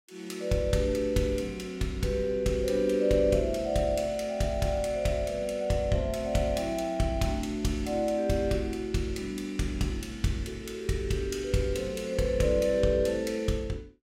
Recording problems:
none

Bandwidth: 16 kHz